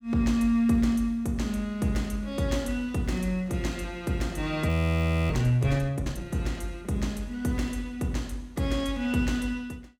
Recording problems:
audio freezing; at 4.5 s for 0.5 s

